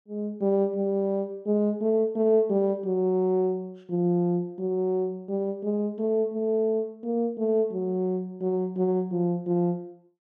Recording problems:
none

